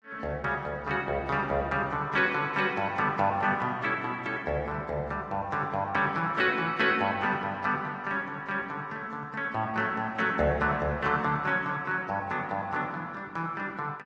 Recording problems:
lossy compression; AAC, log-spectral distance 2 dB

